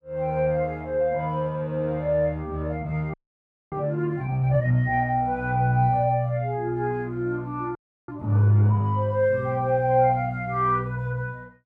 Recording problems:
audio freezing; at 3 s for 0.5 s and at 8 s

